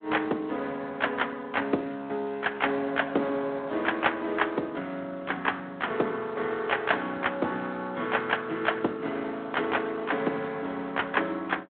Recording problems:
phone line; 220 Hz to 3.4 kHz, Speex

